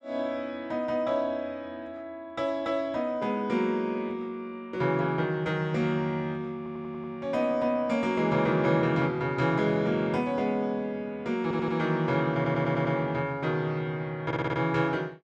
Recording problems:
audio stuttering; 4 times, first at 6.5 s

